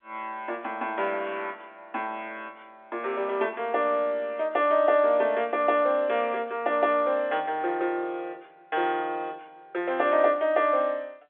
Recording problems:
phone line; 320 Hz to 3.6 kHz, G.711

